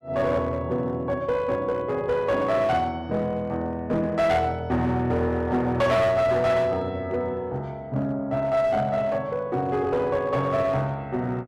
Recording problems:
distorted audio; hard clipping, uneven, signal-to-distortion ratio 11 dB

